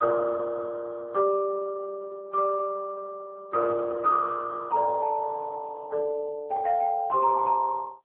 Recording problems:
telephone audio; 320 Hz to 2.5 kHz, AMR-NB

